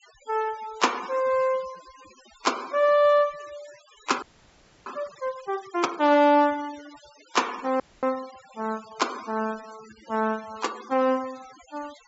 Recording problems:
treble missing; nothing above 8 kHz
noise reduction artefacts; signal-to-artefact ratio 20 dB
audio freezing; at 4 s for 0.5 s and at 8 s

